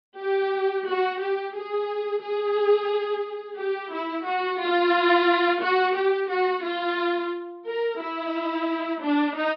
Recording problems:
treble cut off; nothing above 5.5 kHz

